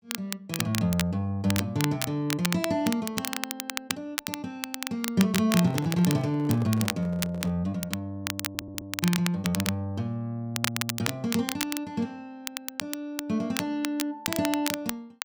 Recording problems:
crackling; vinyl, SNR 4 dB
microphone handling noise; from 5.5 to 7.5 s; peak -5 dB vs average level
stutter; at 8.5 s

